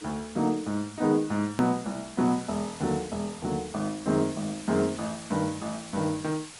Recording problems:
lossy compression; MP3, log-spectral distance 8 dB, nothing above 13.1 kHz
hiss; slope 0 dB per octave, SNR 15 dB
click at an edit; at 1.5 s

